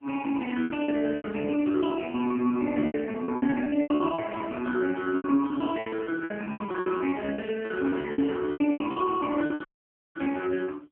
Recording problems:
phone line; 240 Hz to 3.1 kHz, AMR-NB
lost packets; 18% of the sound replaced, filled with repeated pitch periods
crackling; from 6.5 to 9 s; loose cable, SNR 25 dB
dropout; at 9.5 s for 0.5 s

